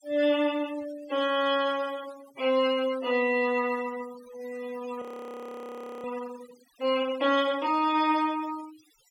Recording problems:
denoising artefacts; signal-to-artefact ratio 20 dB
audio freezing; at 5 s for 1 s

